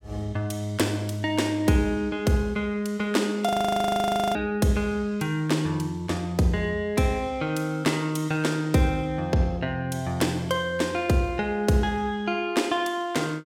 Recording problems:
audio freezing; at 3.5 s for 1 s

